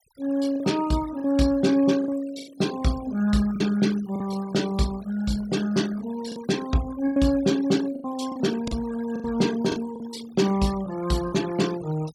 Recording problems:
noise reduction artefacts; signal-to-artefact ratio 17 dB
lost packets; 6% of the sound replaced, filled with the last packet

